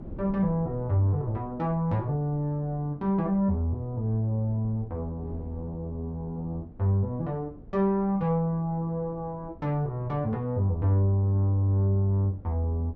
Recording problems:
wind noise; below 250 Hz, SNR 19 dB

